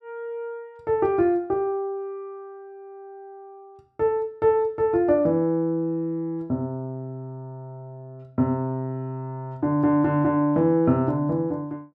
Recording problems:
none

